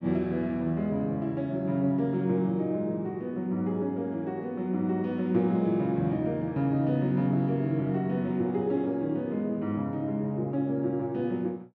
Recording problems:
none

